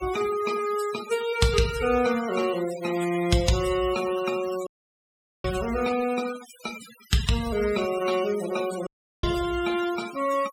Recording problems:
denoising artefacts; signal-to-artefact ratio 12 dB
audio cutting out; at 4.5 s for 1 s and at 9 s

